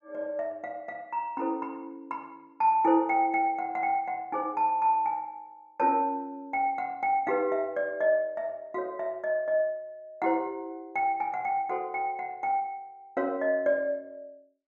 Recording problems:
none

